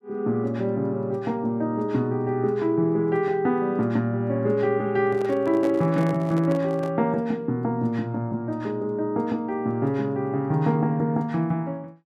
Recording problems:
microphone handling noise; from 5 to 7 s; peak -6 dB vs average level

